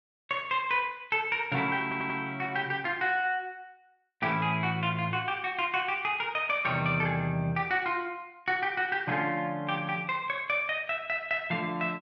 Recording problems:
stutter; at 2 s

